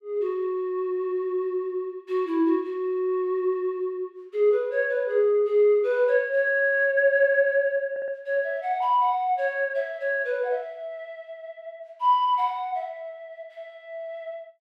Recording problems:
stutter; at 8 s

